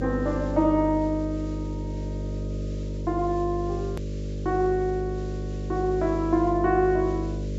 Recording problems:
treble missing; nothing above 8 kHz
electrical hum; 50 Hz, harmonics up to 600 Hz, SNR 6 dB
hiss; SNR 27 dB
edit click; at 4 s

